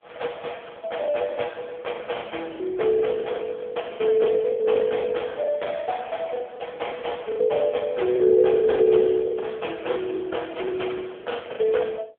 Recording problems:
telephone audio; 280 Hz to 3.4 kHz, AMR-NB
packet loss; 16% of the sound replaced, filled with the last packet

